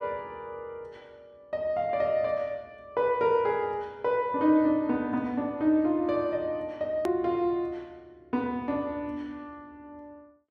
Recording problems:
hard cut with a click; at 7 s

